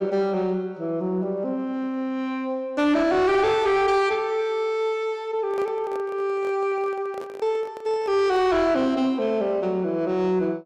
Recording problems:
distortion; soft clipping, signal-to-distortion ratio 12 dB
handling noise; from 5.5 to 8.5 s; peak -9 dB vs average level

